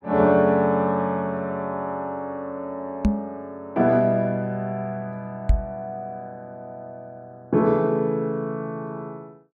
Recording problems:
microphone bump; at 3 s and at 5.5 s; peak +8 dB vs average level

